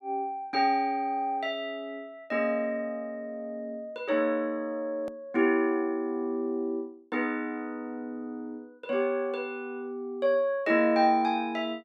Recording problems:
edit click; at 5 s

